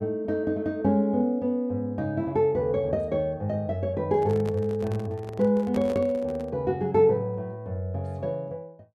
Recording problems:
microphone handling noise; from 4 to 6.5 s; peak -6 dB vs average level

